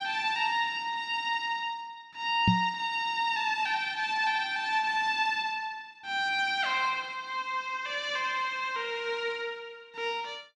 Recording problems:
microphone bump; at 2.5 s; peak +8 dB vs average level

